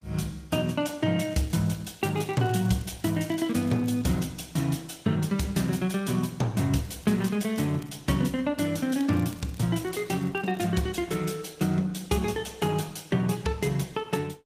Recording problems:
lossy codec; Opus, log-spectral distance 5 dB, nothing above 15.1 kHz
crackling; from 1.5 to 4 s, from 7 to 8 s and from 9 to 11 s; loose cable, SNR 25 dB

